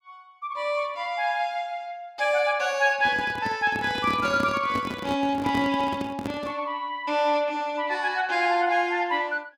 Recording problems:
microphone handling noise; from 3 to 6.5 s; peak -1 dB vs average level

